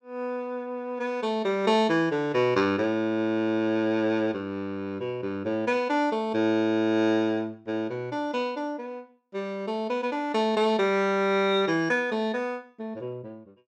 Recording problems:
none

